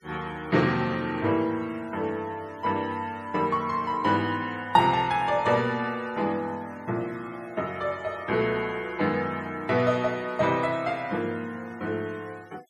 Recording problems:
noise reduction artefacts; signal-to-artefact ratio 25 dB

